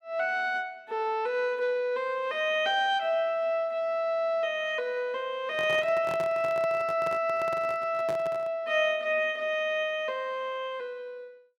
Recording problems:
handling noise; from 5.5 to 8.5 s; peak -6 dB vs average level

